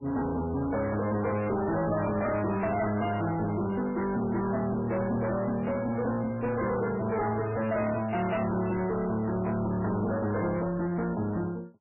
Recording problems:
lossy compression; MP3, log-spectral distance 4 dB, nothing above 2.5 kHz
distorted audio; soft clipping, signal-to-distortion ratio 6 dB

